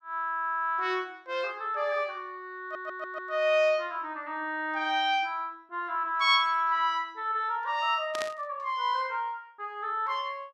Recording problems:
stutter; at 2.5 s
burst of static; at 8 s; peak -3 dB vs average level

